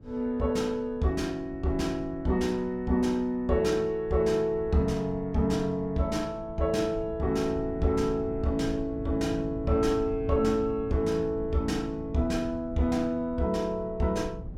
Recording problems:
low-frequency rumble; below 150 Hz, SNR 15 dB

